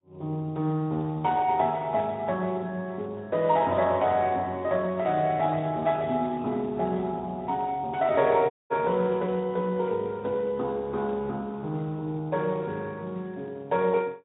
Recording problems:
treble cut off; nothing above 3.8 kHz
codec artefacts; Vorbis, then Speex, log-spectral distance 2 dB
dropout; at 8.5 s

